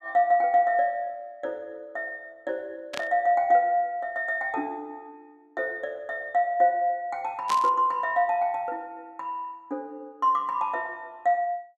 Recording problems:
burst of static; at 3 s and at 7.5 s; peak -3 dB vs average level

